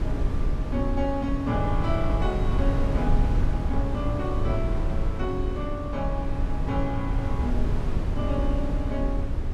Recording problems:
wind on the microphone; below 96 Hz, SNR -2 dB

